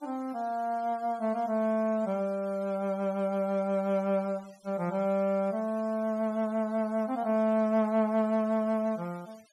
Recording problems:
denoising artefacts; signal-to-artefact ratio 27 dB

